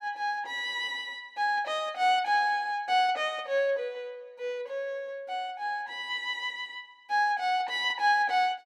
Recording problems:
none

